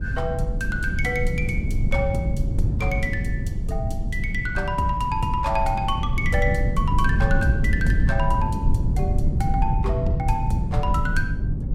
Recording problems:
wind on the microphone; below 130 Hz, SNR -2 dB

